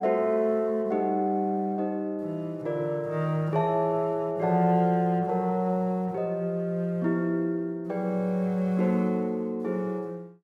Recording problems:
none

